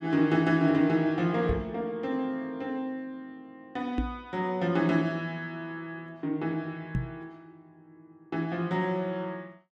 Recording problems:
microphone thump; at 1.5 s, at 4 s and at 7 s; peak +3 dB vs average level

